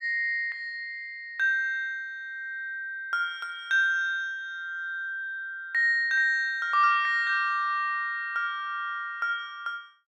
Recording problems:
none

